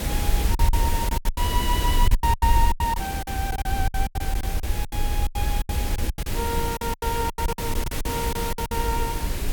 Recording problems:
hiss; slope -4 dB per octave, SNR 1 dB
low-frequency rumble; below 66 Hz, SNR -2 dB
lost packets; 18% of the sound replaced, filled with silence

